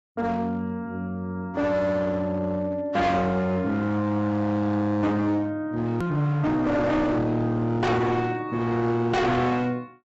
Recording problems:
lossy compression; AAC, log-spectral distance 2 dB, nothing above 13.1 kHz
distorted audio; hard clipping, signal-to-distortion ratio 7 dB
hard cut with a click; at 6 s

